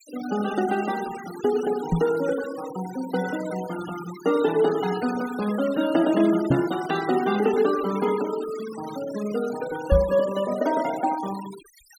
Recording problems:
noise reduction artefacts; signal-to-artefact ratio 14 dB
microphone bump; at 2 s, at 6.5 s and at 10 s; peak +7 dB vs average level

